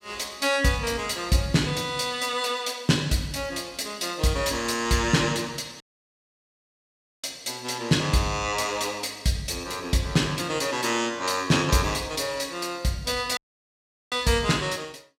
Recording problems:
dropout; at 6 s for 1.5 s and at 13 s for 1 s

